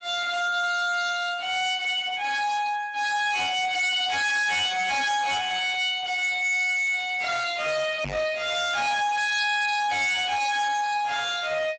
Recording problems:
lossy compression; Speex, log-spectral distance 6 dB, nothing above 7.8 kHz
distortion; soft clipping, signal-to-distortion ratio 6 dB
microphone bump; at 8 s; peak -5 dB vs average level

